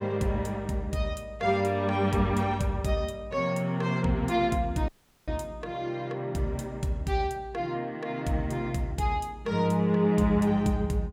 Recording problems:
dropout; at 5 s

